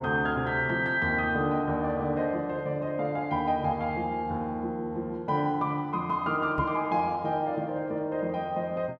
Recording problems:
microphone thump; at 6.5 s; peak -1 dB vs average level

